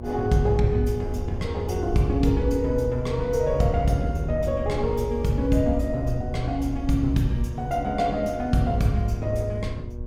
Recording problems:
electrical hum; 60 Hz, harmonics up to 1.1 kHz, SNR 16 dB
low-frequency rumble; below 74 Hz, SNR 9 dB

